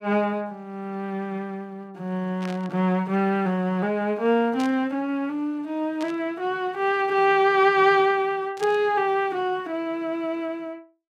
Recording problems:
burst of static; 4 times, first at 2.5 s; peak -9 dB vs average level

